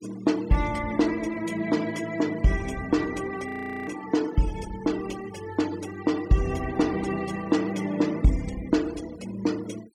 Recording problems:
denoising artefacts; signal-to-artefact ratio 18 dB
audio freezing; at 3.5 s

